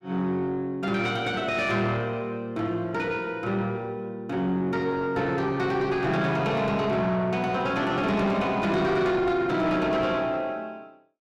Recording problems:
distorted audio; soft clipping, signal-to-distortion ratio 9 dB

